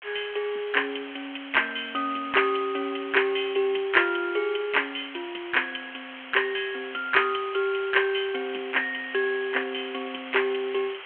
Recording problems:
telephone audio; 300 Hz to 3.3 kHz, G.726
background hiss; SNR 14 dB

